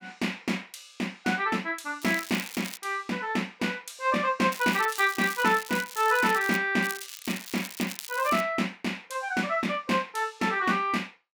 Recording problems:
crackle; at 2 s, from 4.5 to 6.5 s and from 7 to 8.5 s; loose cable, SNR 12 dB

